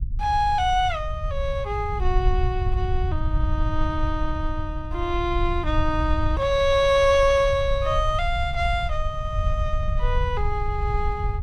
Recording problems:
rumble; below 74 Hz, SNR 4 dB

